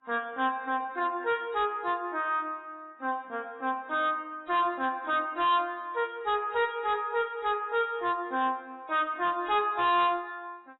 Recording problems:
lossy codec; AAC, log-spectral distance 2 dB, nothing above 3.5 kHz
distortion; hard clipping, signal-to-distortion ratio 11 dB

